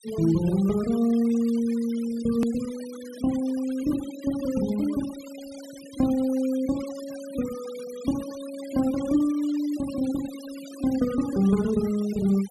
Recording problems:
noise reduction artefacts; signal-to-artefact ratio 19 dB
edit click; at 2.5 s

